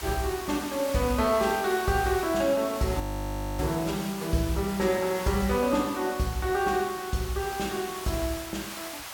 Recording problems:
hiss; SNR 11 dB
audio freezing; at 3 s for 0.5 s

